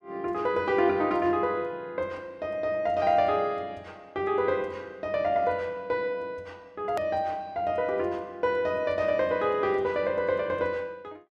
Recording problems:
edit click; at 7 s

